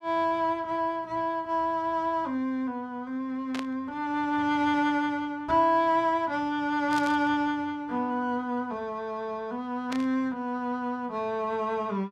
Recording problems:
static burst; at 3.5 s, at 7 s and at 10 s; peak -5 dB vs average level

